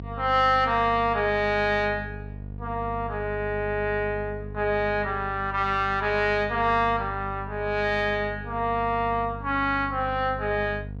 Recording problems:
electrical hum; 50 Hz, harmonics up to 500 Hz, SNR 13 dB

